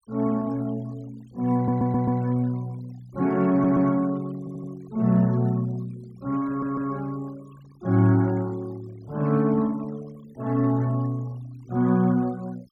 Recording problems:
noise reduction artefacts; signal-to-artefact ratio 26 dB
audio stuttering; 4 times, first at 1.5 s

